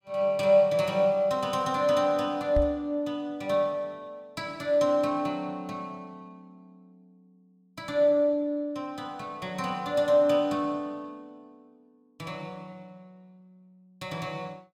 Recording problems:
microphone bump; at 2.5 s; peak +1 dB vs average level

